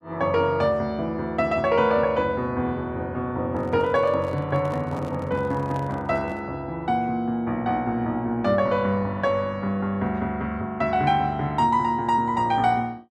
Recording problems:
microphone handling noise; from 3.5 to 6.5 s; peak -11 dB vs average level

